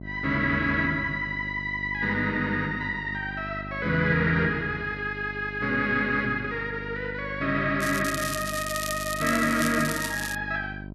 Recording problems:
electrical hum; 50 Hz, harmonics up to 750 Hz, SNR 13 dB
crackling; from 8 to 10 s; loose cable, SNR 8 dB

